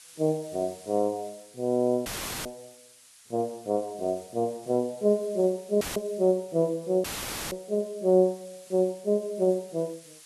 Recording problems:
lossy codec; AAC, log-spectral distance 9 dB
hiss; slope +4 dB per octave, SNR 23 dB
dropout; at 2 s, at 6 s and at 7 s; filled with static

